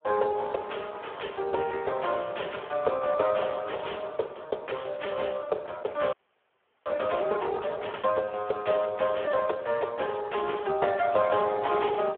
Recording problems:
phone line; 340 Hz to 3.3 kHz, Speex
audio freezing; at 6 s for 0.5 s

